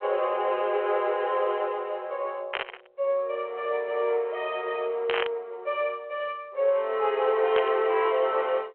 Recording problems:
telephone audio; 340 Hz to 3.4 kHz, G.726
static burst; at 2.5 s, at 5 s and at 7.5 s; peak +1 dB vs average level

